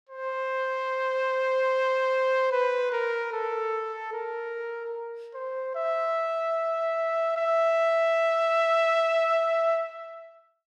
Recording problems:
none

